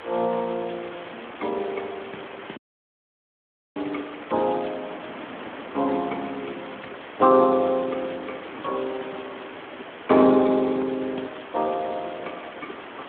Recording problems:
telephone audio; 190 Hz to 3.4 kHz, Speex
hiss; SNR 14 dB
wind noise; below 1.2 kHz, SNR 23 dB
dropout; at 2.5 s for 1 s

